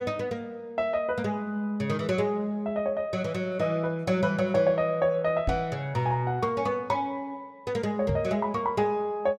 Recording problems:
knock on the microphone; at 5.5 s and at 8 s; peak +2 dB vs average level

